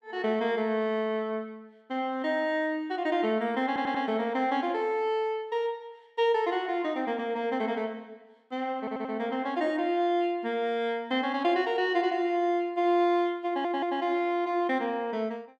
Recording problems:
audio stuttering; at 3.5 s, at 9 s and at 13 s

